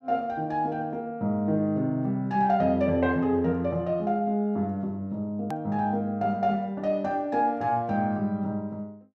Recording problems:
edit click; at 5.5 s

